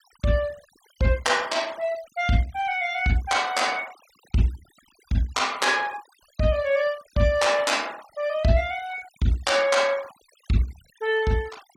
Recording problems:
noise reduction artefacts; signal-to-artefact ratio 22 dB

